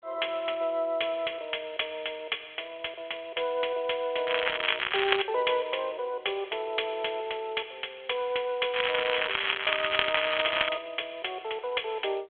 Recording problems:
telephone audio; 340 Hz to 3.4 kHz, G.726
crackle; at 4.5 s and from 8.5 to 11 s; loose cable, SNR -3 dB

